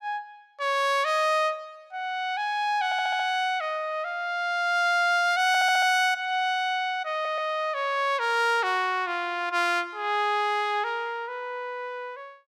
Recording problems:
stutter; at 3 s, at 5.5 s and at 7 s

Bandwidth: 16.5 kHz